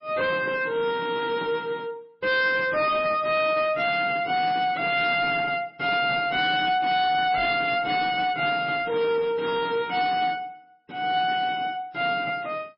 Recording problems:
codec artefacts; MP3, log-spectral distance 3 dB, nothing above 5.2 kHz
distortion; soft clipping, signal-to-distortion ratio 10 dB

